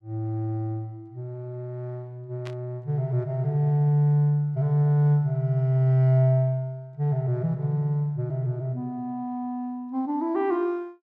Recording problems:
static burst; at 2.5 s; peak -12 dB vs average level

